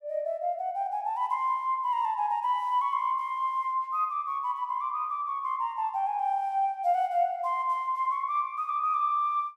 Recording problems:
none

